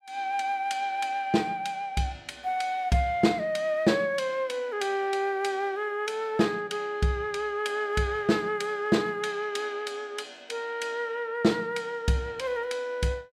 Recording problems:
none

